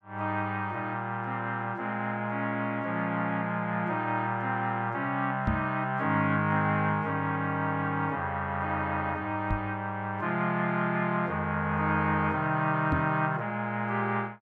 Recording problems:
microphone bump; at 5.5 s, at 9.5 s and at 13 s; peak +3 dB vs average level

